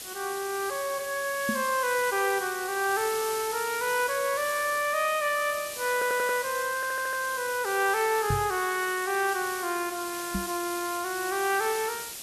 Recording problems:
hiss; SNR 8 dB
knock on the microphone; at 1.5 s, at 8.5 s and at 10 s; peak +1 dB vs average level
stutter; at 6 s and at 7 s

